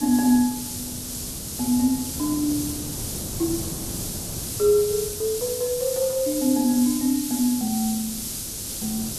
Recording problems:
hiss; slope +6 dB per octave, SNR 6 dB
wind noise; below 330 Hz, SNR 14 dB

